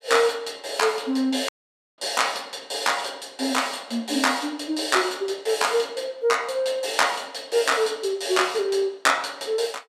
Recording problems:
audio cutting out; at 1.5 s

